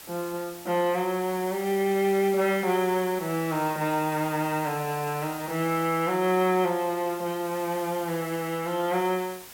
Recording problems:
background hiss; slope -1 dB per octave, SNR 15 dB

